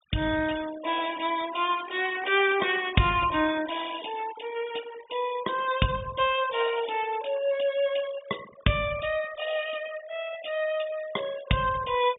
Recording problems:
treble missing; nothing above 3.7 kHz
noise reduction artefacts; signal-to-artefact ratio 16 dB

